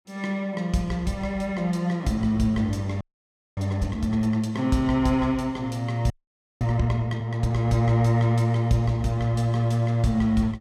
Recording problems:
audio freezing; at 3 s for 0.5 s and at 6 s for 0.5 s

